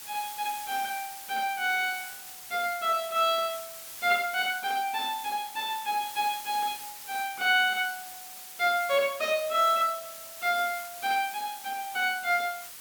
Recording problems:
hiss; slope +1 dB per octave, SNR 12 dB

